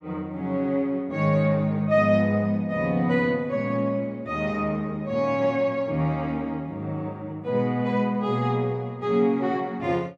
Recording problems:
none

